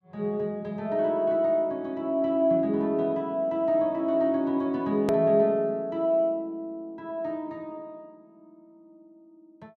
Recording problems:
click at an edit; at 5 s

